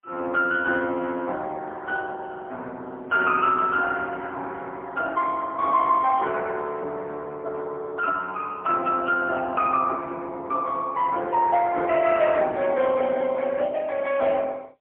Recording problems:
telephone audio; 320 Hz to 3.4 kHz, AMR-NB, then MP3

